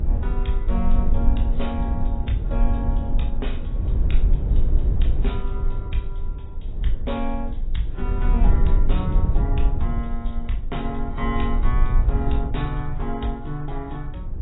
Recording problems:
lossy codec; AAC, log-spectral distance 2 dB, nothing above 3.8 kHz
rumble; below 56 Hz, SNR -5 dB

